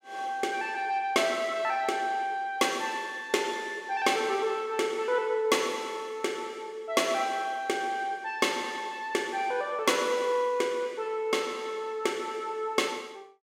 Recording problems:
none

